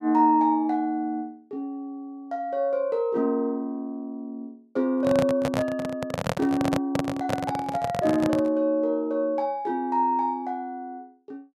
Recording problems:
handling noise; from 5 to 8.5 s; peak +3 dB vs average level

